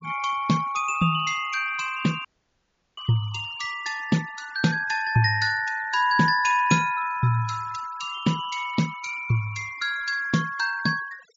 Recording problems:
low-pass filter; nothing above 7.2 kHz
denoising artefacts; signal-to-artefact ratio 18 dB
audio cutting out; at 2.5 s for 0.5 s

